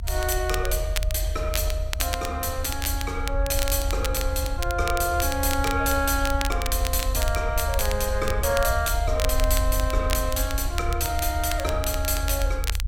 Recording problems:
rumble; below 74 Hz, SNR 3 dB
crackle; vinyl, SNR 9 dB

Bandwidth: 16.5 kHz